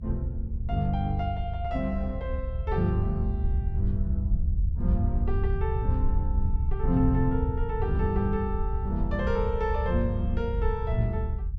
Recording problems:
rumble; below 76 Hz, SNR 0 dB

